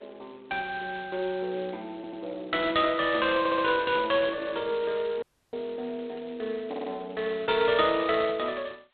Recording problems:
phone line; 280 Hz to 3.9 kHz, G.726
audio stuttering; at 2 s, at 3.5 s and at 6.5 s
audio cutting out; at 5 s

